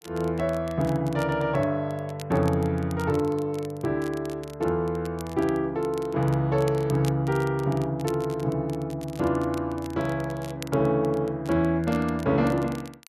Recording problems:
crackle; vinyl, SNR 21 dB

